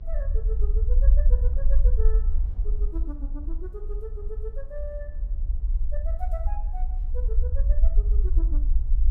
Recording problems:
electrical hum; 60 Hz, harmonics up to 600 Hz, SNR 13 dB
rumble; below 50 Hz, SNR -15 dB
wind on the microphone; below 320 Hz, SNR 15 dB

